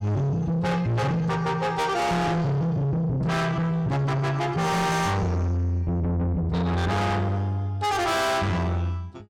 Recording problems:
distortion; soft clipping, signal-to-distortion ratio 6 dB

